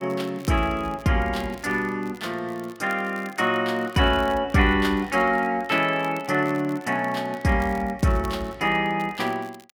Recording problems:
crackling; vinyl, SNR 26 dB

